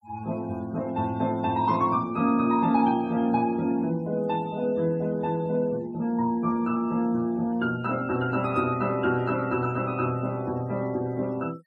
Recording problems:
denoising artefacts; signal-to-artefact ratio 26 dB

